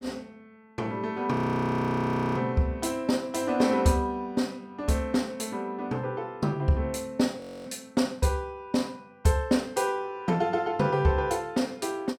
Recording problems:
audio freezing; at 1.5 s for 1 s and at 7.5 s

